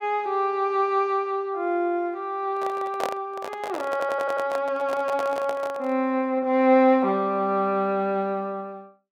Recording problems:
microphone handling noise; from 2.5 to 6 s; peak -1 dB vs average level
audio stuttering; at 4 s

